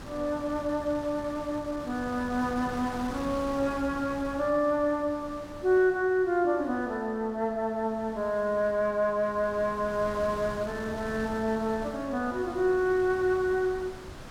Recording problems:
wind noise; below 1.3 kHz, SNR 15 dB

